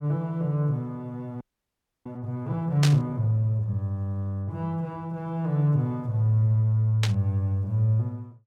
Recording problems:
frozen audio; at 1.5 s for 0.5 s
burst of static; at 3 s and at 7 s; peak +3 dB vs average level

